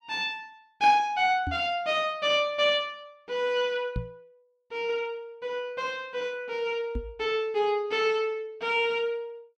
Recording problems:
knock on the microphone; at 1.5 s, at 4 s and at 7 s; peak -1 dB vs average level

